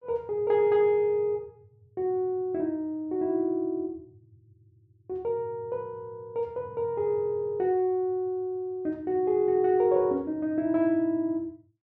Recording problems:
none

